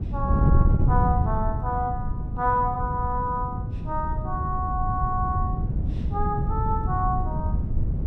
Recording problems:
wind on the microphone; below 140 Hz, SNR -1 dB

